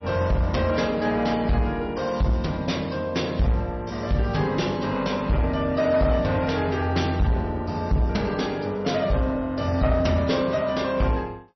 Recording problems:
lossy codec; MP3, log-spectral distance 3 dB, nothing above 5.8 kHz
distorted audio; soft clipping, signal-to-distortion ratio 11 dB

